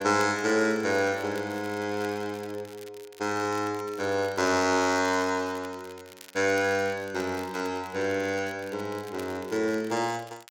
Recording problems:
crackling; vinyl, SNR 21 dB

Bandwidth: 16.5 kHz